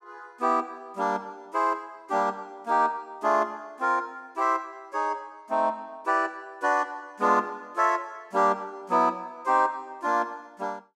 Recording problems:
none

